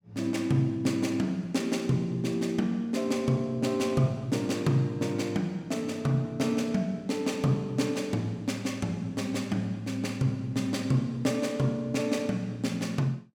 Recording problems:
none

